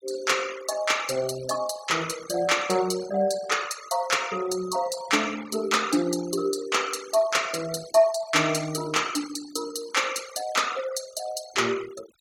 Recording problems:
denoising artefacts; signal-to-artefact ratio 15 dB

